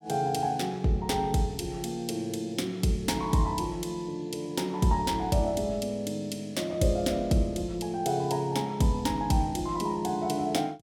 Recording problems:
none

